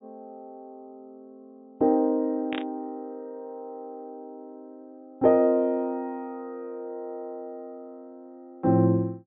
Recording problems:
treble cut off; nothing above 4 kHz
static burst; at 2.5 s; peak -5 dB vs average level

